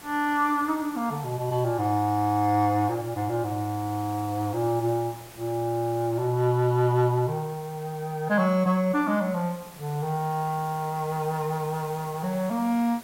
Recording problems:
background hiss; slope -3 dB per octave, SNR 19 dB

